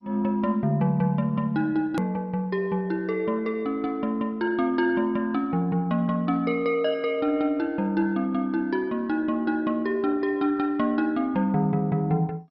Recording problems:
lossy compression; MP2, log-spectral distance 2 dB, nothing above 13.1 kHz
click at an edit; at 2 s

